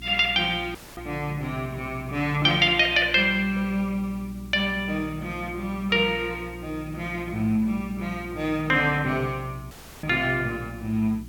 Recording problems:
electrical hum; 60 Hz, harmonics up to 360 Hz, SNR 17 dB
hiss; slope 0 dB per octave, SNR 28 dB
dropout; at 1 s and at 9.5 s

